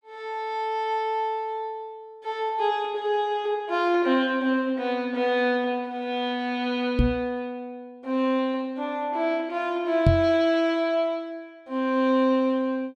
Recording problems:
microphone bump; at 7 s and at 10 s; peak +8 dB vs average level

